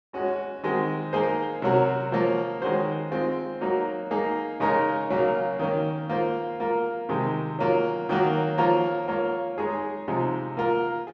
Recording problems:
none

